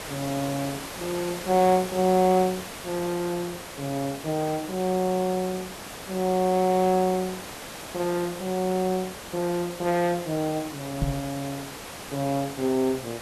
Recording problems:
hiss; slope -3 dB per octave, SNR 11 dB
microphone bump; at 11 s; peak +4 dB vs average level

